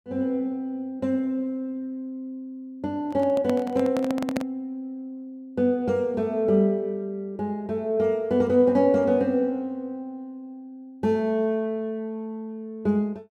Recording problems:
handling noise; from 3 to 4.5 s; peak +2 dB vs average level

